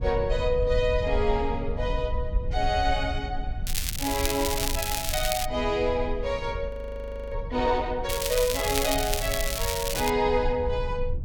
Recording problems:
low-frequency rumble; below 72 Hz, SNR 6 dB
crackling; from 3.5 to 5.5 s and from 8 to 10 s; loose cable, SNR 2 dB
frozen audio; at 6.5 s for 0.5 s

